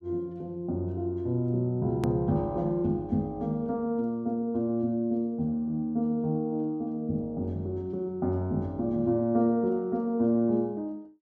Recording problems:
click at an edit; at 2 s

